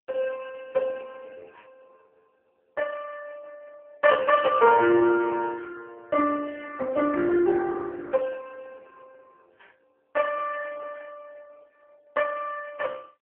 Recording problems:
phone line; 240 Hz to 3 kHz, AMR-NB

